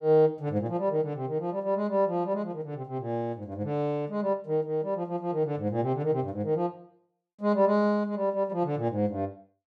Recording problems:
none

